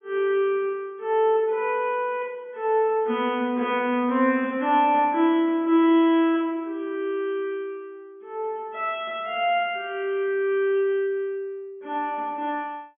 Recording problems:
treble cut off; nothing above 3.4 kHz

